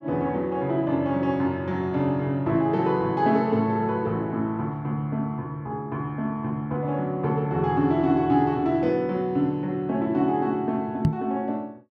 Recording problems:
knock on the microphone; at 11 s; peak +7 dB vs average level

